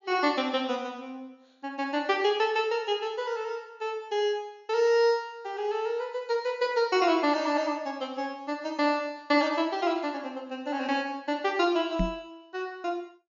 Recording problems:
treble missing; nothing above 7.1 kHz
microphone bump; at 12 s; peak +3 dB vs average level

